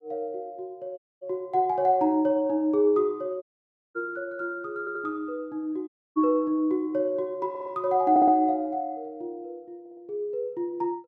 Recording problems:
dropout; at 1 s, at 3.5 s for 0.5 s and at 6 s
stutter; 4 times, first at 5 s

